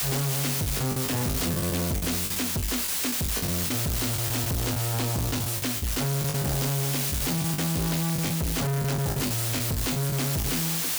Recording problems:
distortion; hard clipping, signal-to-distortion ratio 6 dB
background hiss; slope +1 dB per octave, SNR 0 dB
packet loss; 10% of the sound replaced, filled with the last packet
crackling; from 4 to 5 s and from 6 to 8.5 s; loose cable, SNR 17 dB

